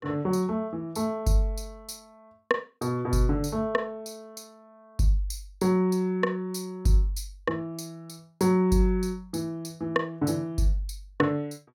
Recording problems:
none

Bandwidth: 16.5 kHz